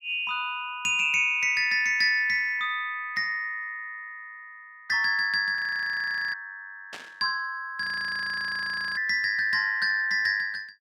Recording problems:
audio freezing; at 5.5 s for 1 s and at 8 s for 1 s
burst of static; at 7 s; peak -10 dB vs average level

